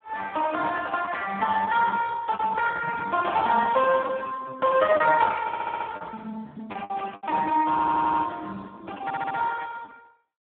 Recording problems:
phone line; 240 Hz to 2.3 kHz, Speex
lost packets; 6% of the sound replaced, filled with the last packet
audio stuttering; at 5.5 s, at 7.5 s and at 9 s

